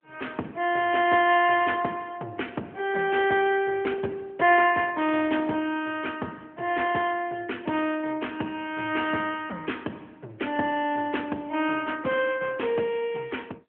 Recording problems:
telephone audio; 260 Hz to 3.2 kHz, AMR-NB

